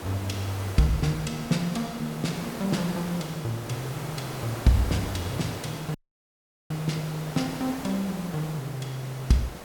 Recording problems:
background hiss; slope -6 dB per octave, SNR 8 dB
audio cutting out; at 6 s for 1 s

